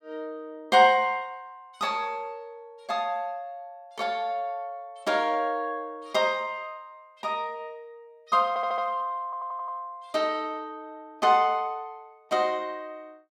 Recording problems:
stutter; at 8.5 s and at 9 s

